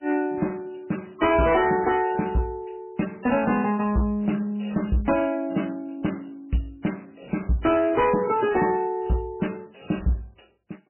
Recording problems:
lossy codec; MP3, log-spectral distance 5 dB, nothing above 2.5 kHz
distorted audio; hard clipping, signal-to-distortion ratio 11 dB

